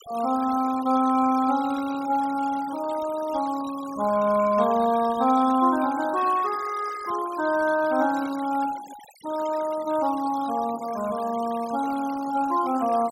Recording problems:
denoising artefacts; signal-to-artefact ratio 17 dB

